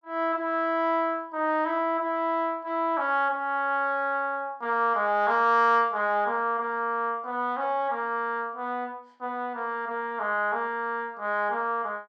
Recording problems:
none

